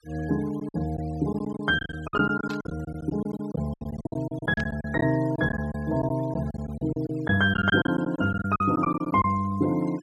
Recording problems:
denoising artefacts; signal-to-artefact ratio 21 dB
packet loss; 14% of the sound replaced, filled with silence
burst of static; at 2.5 s and at 4.5 s; peak -9 dB vs average level

